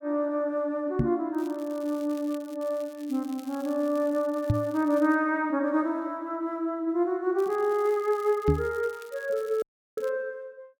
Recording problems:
microphone thump; at 1 s, at 4.5 s and at 8.5 s; peak +7 dB vs average level
crackling; from 1.5 to 2.5 s, from 2.5 to 5 s and from 7.5 to 10 s; loose cable, SNR 24 dB
dropout; at 9.5 s

